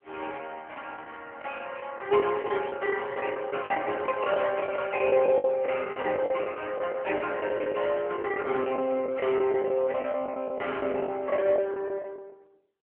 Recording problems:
telephone audio; 170 Hz to 3.1 kHz, AMR-NB
packet loss; 13% of the sound replaced, filled with the last packet

